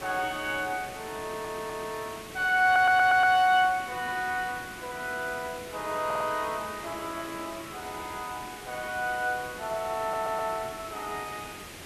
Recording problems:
hiss; SNR 13 dB
stutter; 4 times, first at 1 s

